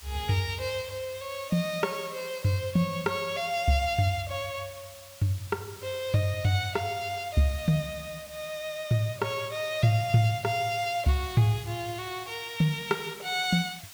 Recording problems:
hiss; slope +2 dB per octave, SNR 17 dB

